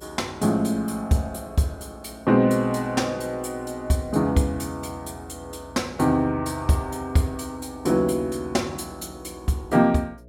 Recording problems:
hum; 60 Hz, harmonics up to 660 Hz, SNR 24 dB

